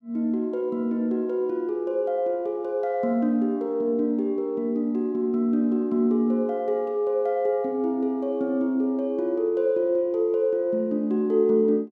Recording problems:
none

